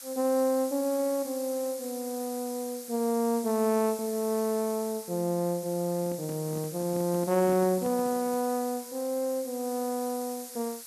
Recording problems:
background hiss; SNR 12 dB
handling noise; from 6 to 8.5 s; peak -8 dB vs average level

